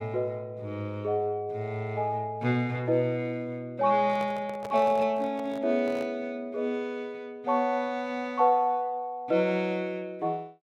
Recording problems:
handling noise; from 4 to 6 s; peak -7 dB vs average level

